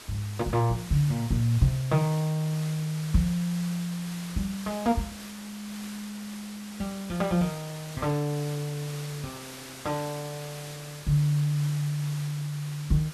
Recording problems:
hiss; slope -1 dB per octave, SNR 13 dB

